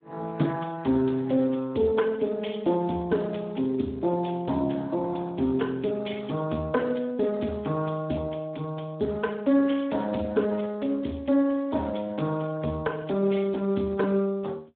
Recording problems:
phone line; 170 Hz to 3.5 kHz, Speex

